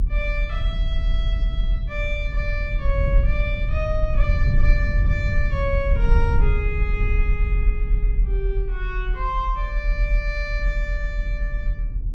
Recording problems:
low-frequency rumble; below 58 Hz, SNR -6 dB

